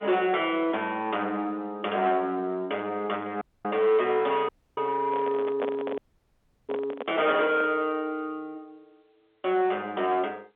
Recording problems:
phone line; 240 Hz to 3.5 kHz, G.711
distortion; soft clipping, signal-to-distortion ratio 12 dB
audio cutting out; at 3.5 s, at 4.5 s and at 6 s for 0.5 s
microphone handling noise; from 5 to 7.5 s; peak 0 dB vs average level

